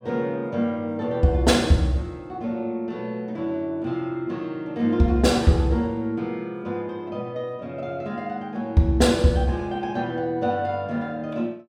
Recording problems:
none

